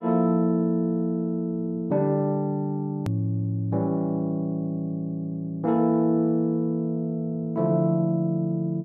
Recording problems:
edit click; at 3 s

